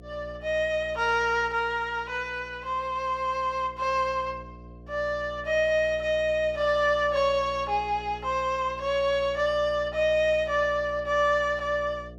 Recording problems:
hum; 60 Hz, harmonics up to 720 Hz, SNR 19 dB

